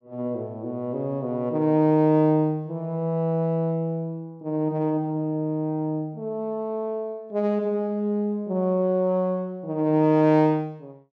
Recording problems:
none

